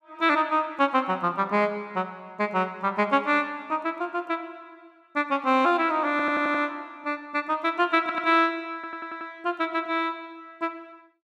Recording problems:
audio stuttering; at 6 s, at 8 s and at 8.5 s

